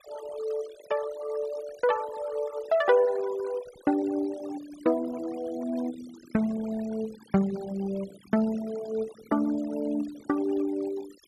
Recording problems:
denoising artefacts; signal-to-artefact ratio 18 dB

